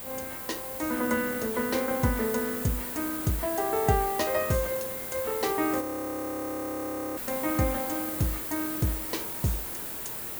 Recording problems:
hum; 50 Hz, harmonics up to 450 Hz, SNR 25 dB
background hiss; slope -4 dB per octave, SNR 4 dB
frozen audio; at 6 s for 1.5 s

